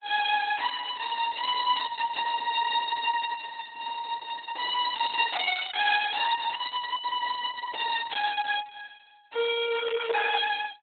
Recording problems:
codec artefacts; Opus, log-spectral distance 6 dB, nothing above 4 kHz

